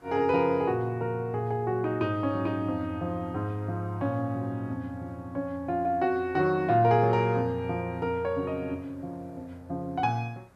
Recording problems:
background hiss; SNR 30 dB

